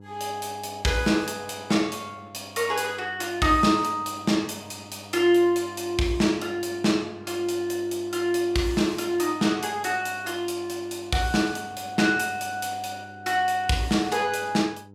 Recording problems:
electrical hum; 50 Hz, harmonics up to 900 Hz, SNR 22 dB

